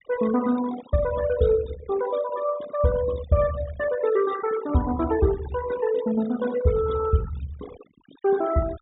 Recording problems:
treble missing; nothing above 4 kHz
denoising artefacts; signal-to-artefact ratio 15 dB

